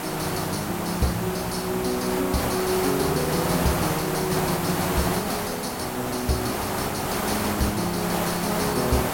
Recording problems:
hiss; SNR 1 dB

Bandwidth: 16.5 kHz